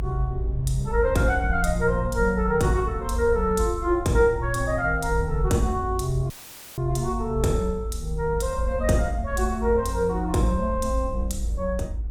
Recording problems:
low-frequency rumble; below 62 Hz, strongest tone 54 Hz, SNR 6 dB
dropout; at 6.5 s; filled with static

